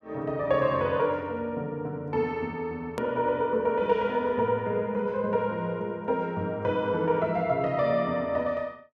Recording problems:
edit click; at 3 s

